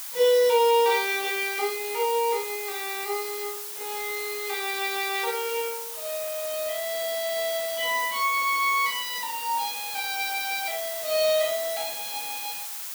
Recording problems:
hiss; SNR 6 dB

